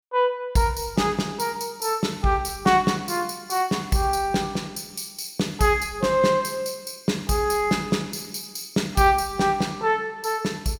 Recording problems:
none

